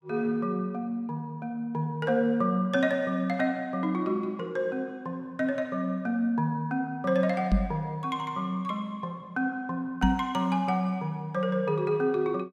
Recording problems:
knock on the microphone; at 7.5 s and at 10 s; peak +7 dB vs average level

